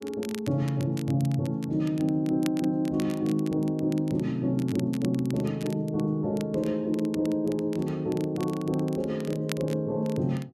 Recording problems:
crackle; vinyl, SNR 19 dB

